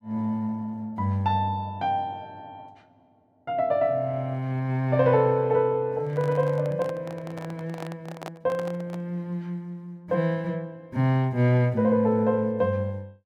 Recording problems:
handling noise; from 6 to 9 s; peak -6 dB vs average level

